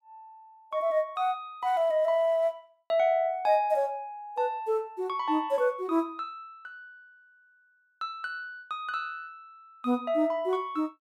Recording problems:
none

